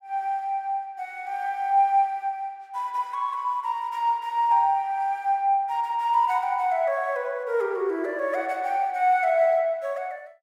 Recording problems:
none

